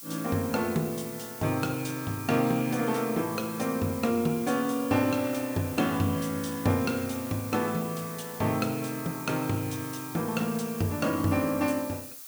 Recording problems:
hiss; SNR 12 dB

